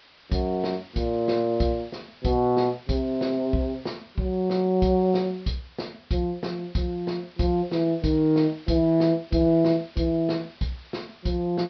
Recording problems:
low-pass filter; nothing above 5.5 kHz
background hiss; SNR 25 dB

